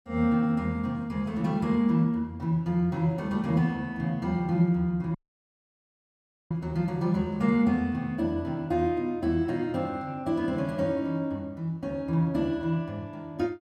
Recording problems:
dropout; at 5 s for 1.5 s

